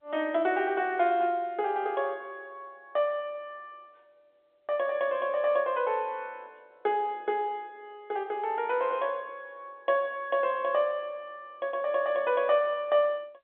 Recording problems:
telephone audio; 320 Hz to 3.6 kHz, G.711

